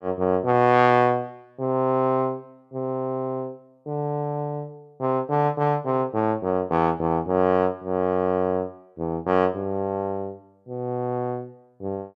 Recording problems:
none

